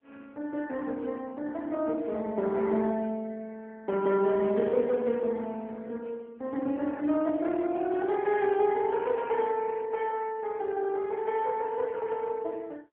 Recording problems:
phone line; 130 Hz to 3.4 kHz, AMR-NB

